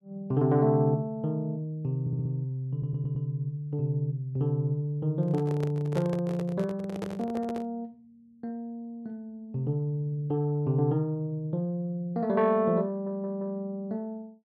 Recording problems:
audio stuttering; at 2 s, at 2.5 s and at 13 s
handling noise; from 5 to 7.5 s; peak -1 dB vs average level

